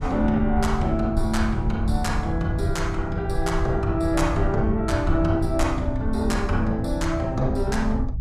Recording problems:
rumble; below 92 Hz, SNR 4 dB

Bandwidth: 15.5 kHz